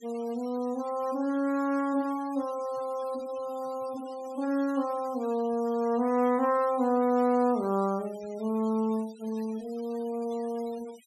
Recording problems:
noise reduction artefacts; signal-to-artefact ratio 23 dB

